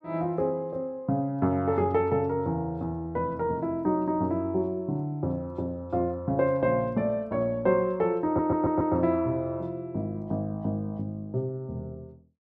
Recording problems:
stutter; at 8.5 s

